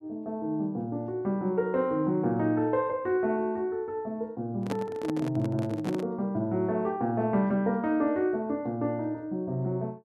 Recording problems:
microphone handling noise; from 4.5 to 6 s; peak 0 dB vs average level

